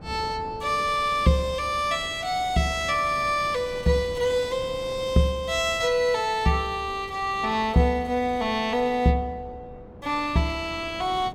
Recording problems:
wind noise; below 480 Hz, SNR 19 dB

